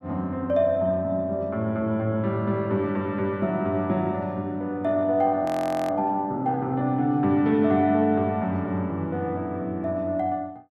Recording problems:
frozen audio; at 5.5 s

